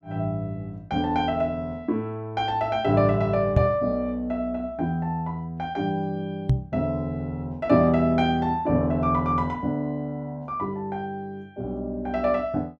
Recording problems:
microphone thump; at 3.5 s and at 6.5 s; peak +9 dB vs average level

